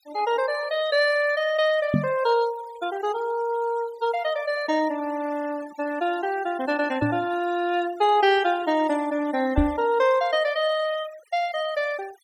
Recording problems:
denoising artefacts; signal-to-artefact ratio 19 dB
microphone thump; at 2 s, at 7 s and at 9.5 s; peak +6 dB vs average level

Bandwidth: 17 kHz